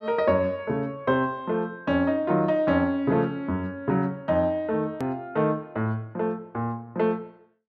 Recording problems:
edit click; at 5 s

